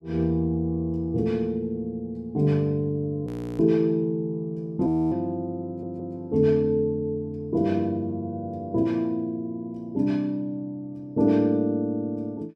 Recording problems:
frozen audio; at 3.5 s and at 5 s
stutter; at 5.5 s

